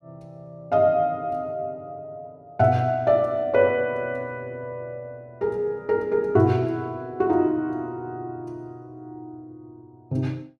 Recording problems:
none

